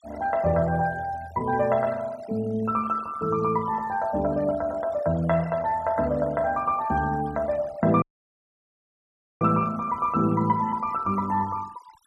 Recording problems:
noise reduction artefacts; signal-to-artefact ratio 23 dB
audio cutting out; at 8 s for 1.5 s

